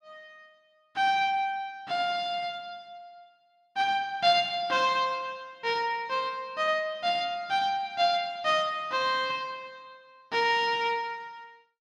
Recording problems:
none

